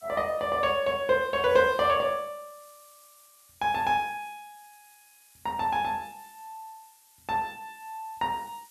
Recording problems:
hiss; slope +3 dB per octave, SNR 27 dB

